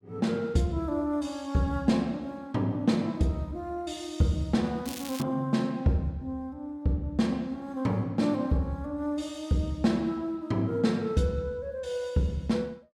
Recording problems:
crackle; at 5 s; loose cable, SNR 13 dB

